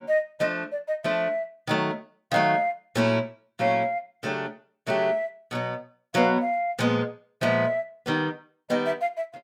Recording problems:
none

